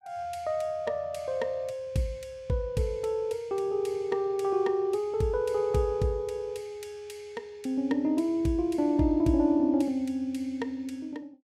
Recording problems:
none

